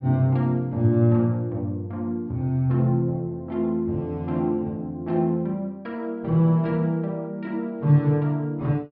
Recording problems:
treble missing; nothing above 5.5 kHz

